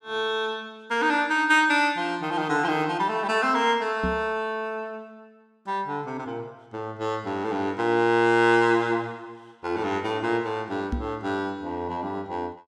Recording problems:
microphone thump; at 4 s and at 11 s; peak 0 dB vs average level

